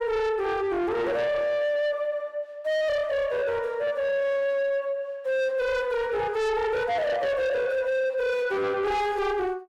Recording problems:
distorted audio; soft clipping, signal-to-distortion ratio 8 dB

